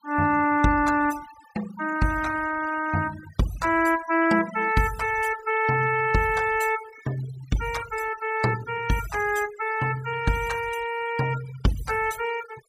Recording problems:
noise reduction artefacts; signal-to-artefact ratio 16 dB

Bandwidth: 15.5 kHz